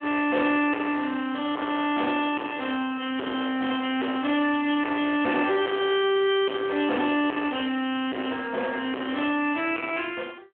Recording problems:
telephone audio; 260 Hz to 3.5 kHz, Speex
distorted audio; soft clipping, signal-to-distortion ratio 9 dB

